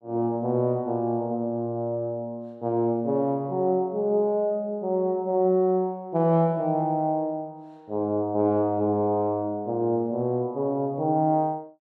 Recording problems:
none

